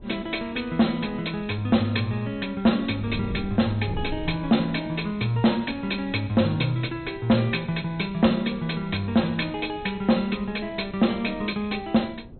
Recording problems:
treble cut off; nothing above 4.1 kHz
distortion; soft clipping, signal-to-distortion ratio 12 dB
wind on the microphone; below 240 Hz, SNR 17 dB

